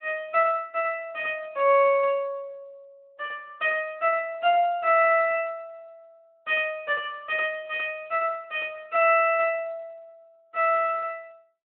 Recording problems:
telephone audio; 300 Hz to 3.3 kHz, Speex

